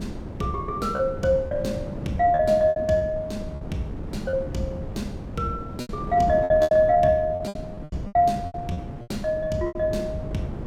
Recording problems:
wind on the microphone; below 300 Hz, SNR 11 dB
packet loss; 11% of the sound replaced, filled with repeated pitch periods

